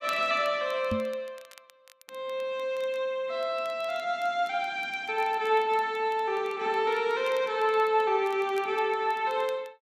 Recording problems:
crackle; vinyl, SNR 27 dB
microphone thump; at 1 s; peak 0 dB vs average level

